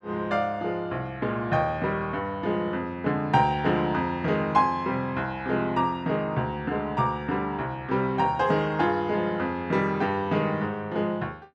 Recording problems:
none

